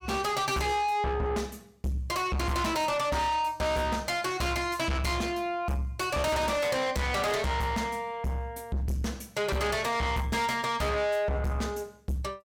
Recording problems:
distortion; soft clipping, signal-to-distortion ratio 6 dB

